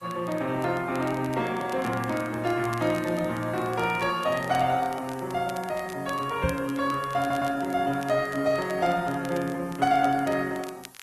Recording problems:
lossy compression; Opus, log-spectral distance 4 dB
hiss; slope -1 dB per octave, SNR 27 dB
crackle; vinyl, SNR 21 dB
microphone bump; at 6.5 s; peak +1 dB vs average level
stutter; at 7 s

